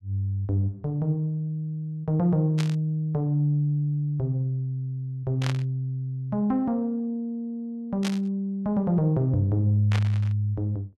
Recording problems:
static burst; 4 times, first at 2.5 s; peak -3 dB vs average level

